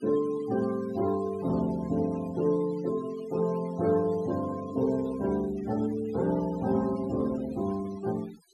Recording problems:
denoising artefacts; signal-to-artefact ratio 18 dB

